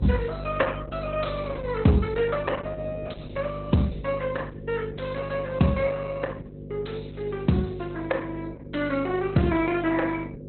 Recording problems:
lossy codec; Opus, log-spectral distance 4 dB, nothing above 4.1 kHz
mains hum; 50 Hz, harmonics up to 550 Hz, SNR 10 dB

